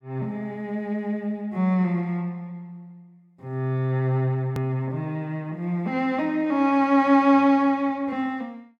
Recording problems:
hard cut with a click; at 4.5 s

